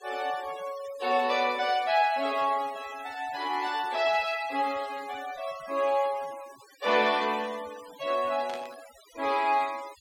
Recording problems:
noise reduction artefacts; signal-to-artefact ratio 18 dB
static burst; at 8.5 s; peak -10 dB vs average level

